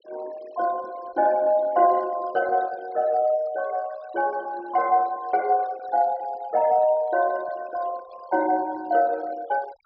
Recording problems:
low-pass filter; nothing above 5.5 kHz
denoising artefacts; signal-to-artefact ratio 23 dB

